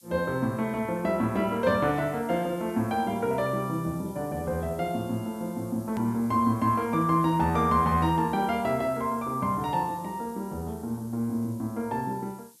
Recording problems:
background hiss; SNR 24 dB
hard cut with a click; at 6 s

